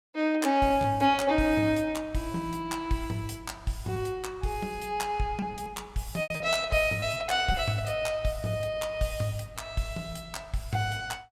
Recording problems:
packet loss; 3% of the sound replaced, filled with repeated pitch periods

